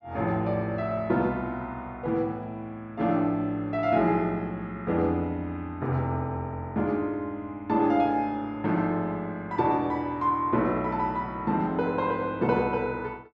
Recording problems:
none

